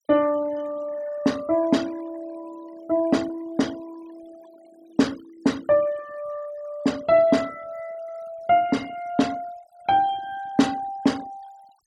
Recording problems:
denoising artefacts; signal-to-artefact ratio 22 dB

